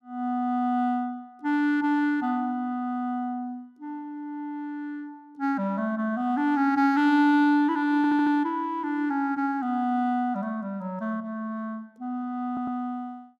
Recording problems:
audio stuttering; at 8 s and at 12 s

